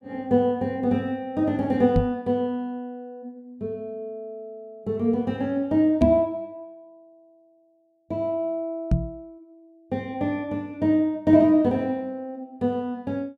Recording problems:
knock on the microphone; at 2 s, at 6 s and at 9 s; peak +7 dB vs average level

